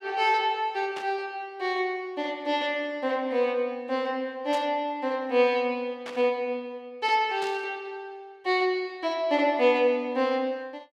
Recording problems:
static burst; 4 times, first at 1 s; peak -8 dB vs average level

